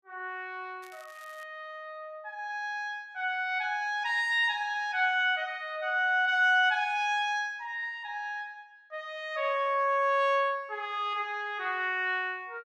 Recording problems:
crackle; at 1 s; loose cable, SNR 28 dB

